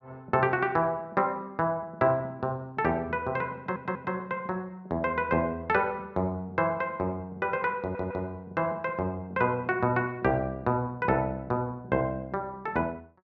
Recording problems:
stutter; at 3.5 s and at 8 s

